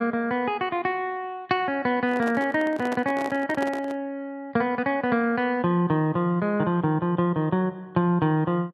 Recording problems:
microphone handling noise; from 2 to 4 s; peak -4 dB vs average level

